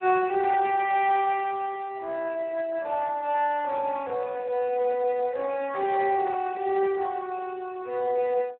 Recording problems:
telephone audio; 320 Hz to 2.8 kHz, Speex

